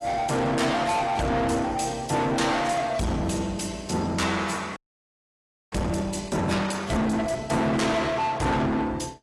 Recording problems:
lossy compression; AAC, log-spectral distance 4 dB, nothing above 11.3 kHz
distortion; soft clipping, signal-to-distortion ratio 7 dB
audio freezing; at 5 s for 1 s

